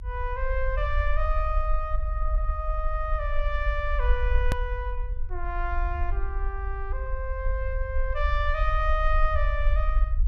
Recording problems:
low-frequency rumble; below 50 Hz, SNR -1 dB
edit click; at 4.5 s

